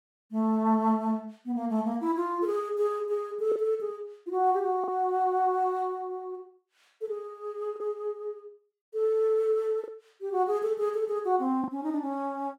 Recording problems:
packet loss; 1.8% of the sound replaced, filled with the last packet

